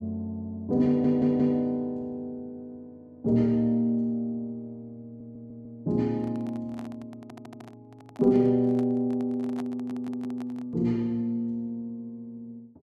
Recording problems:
audio stuttering; 4 times, first at 1 s
microphone handling noise; from 6 to 11 s; peak -10 dB vs average level

